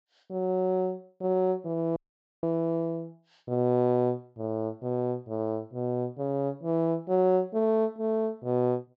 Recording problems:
treble cut off; nothing above 8 kHz
audio cutting out; at 2 s

